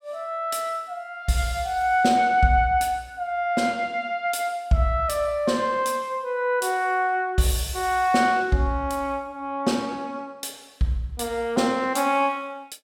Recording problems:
none

